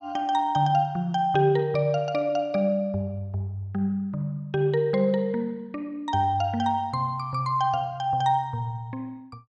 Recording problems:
none

